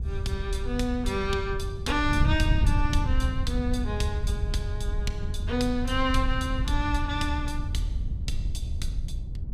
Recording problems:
wind on the microphone; below 88 Hz, SNR 0 dB

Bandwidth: 15.5 kHz